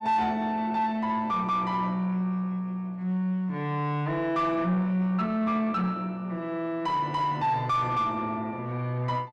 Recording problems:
distorted audio; soft clipping, signal-to-distortion ratio 11 dB

